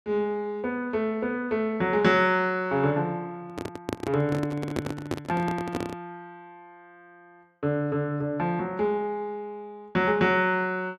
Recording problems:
microphone handling noise; from 3.5 to 6 s; peak +2 dB vs average level

